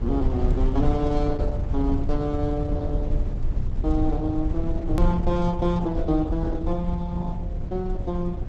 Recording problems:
codec artefacts; Opus, log-spectral distance 2 dB, nothing above 14.1 kHz
rumble; below 84 Hz, SNR 1 dB
hard cut with a click; at 5 s

